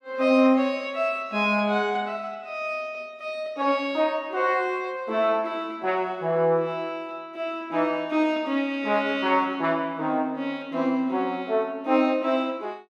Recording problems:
none

